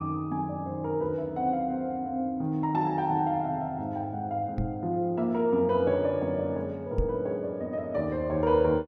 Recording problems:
microphone thump; at 4.5 s and at 7 s; peak +3 dB vs average level

